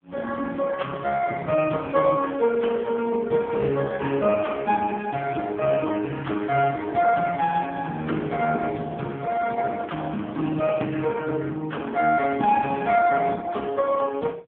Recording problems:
phone line; 170 Hz to 3.4 kHz, AMR-NB

